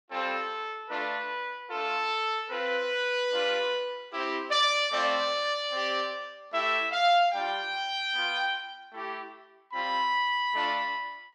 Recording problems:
none

